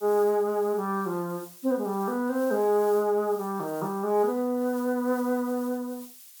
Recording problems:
background hiss; slope +6 dB per octave, SNR 19 dB

